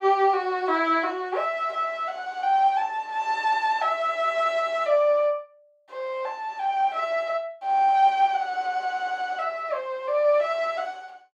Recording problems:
none

